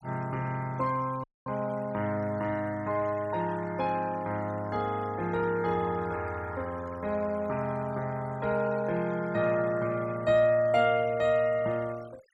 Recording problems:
noise reduction artefacts; signal-to-artefact ratio 22 dB
audio cutting out; at 1 s

